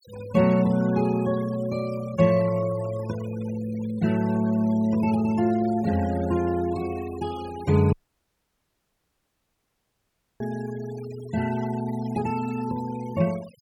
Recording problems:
denoising artefacts; signal-to-artefact ratio 20 dB
dropout; at 8 s for 2.5 s

